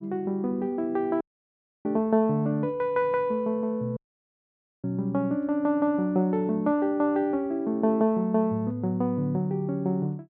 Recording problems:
audio cutting out; at 1 s for 0.5 s and at 4 s for 1 s

